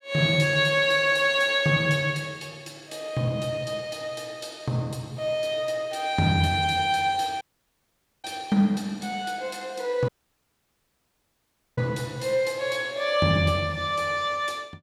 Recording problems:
dropout; at 7.5 s for 1 s and at 10 s for 1.5 s

